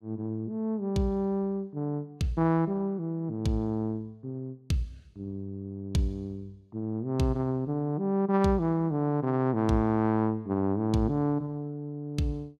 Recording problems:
none

